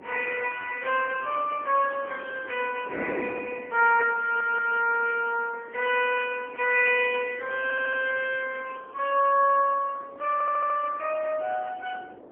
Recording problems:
telephone audio; 390 Hz to 3.1 kHz, AMR-NB, then MP3
wind on the microphone; below 600 Hz, SNR 17 dB
audio stuttering; at 4 s, at 7.5 s and at 10 s

